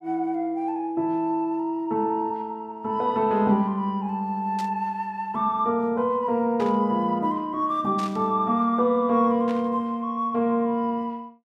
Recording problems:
static burst; 4 times, first at 4.5 s; peak -11 dB vs average level

